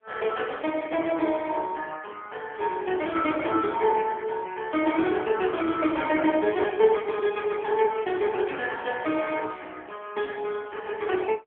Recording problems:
telephone audio; 280 Hz to 3.3 kHz, AMR-NB

